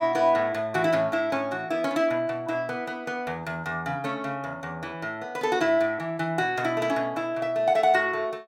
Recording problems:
none

